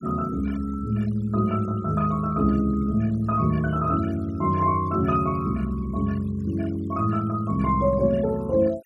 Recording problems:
noise reduction artefacts; signal-to-artefact ratio 24 dB

